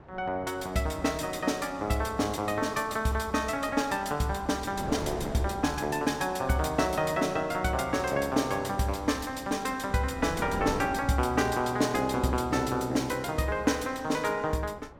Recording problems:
wind on the microphone; below 710 Hz, SNR 15 dB

